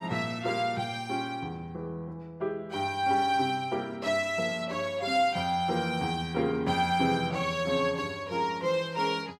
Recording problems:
none

